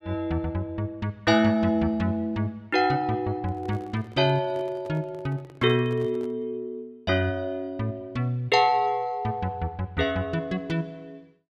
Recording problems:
microphone handling noise; from 3.5 to 6.5 s; peak -11 dB vs average level

